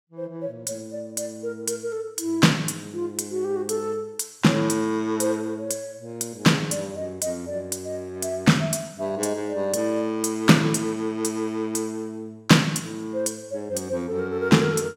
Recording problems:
none

